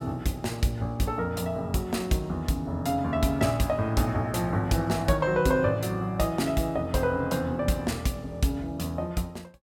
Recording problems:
none

